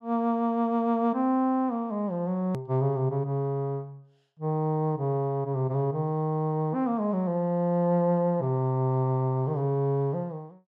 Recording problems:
edit click; at 2.5 s

